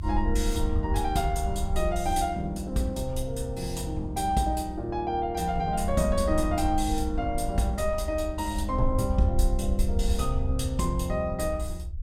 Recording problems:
rumble; below 74 Hz, SNR 4 dB

